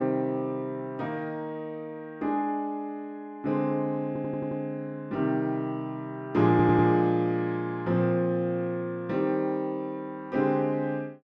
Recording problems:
stutter; at 4 s and at 6.5 s

